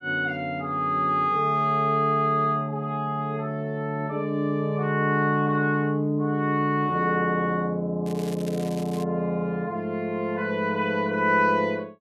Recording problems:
crackle; at 8 s; loose cable, SNR 20 dB

